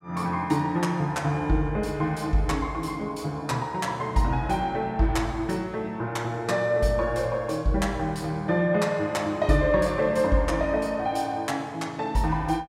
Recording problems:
none

